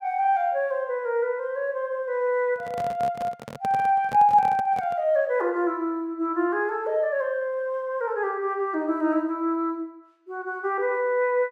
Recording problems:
microphone handling noise; from 2.5 to 5 s; peak -7 dB vs average level

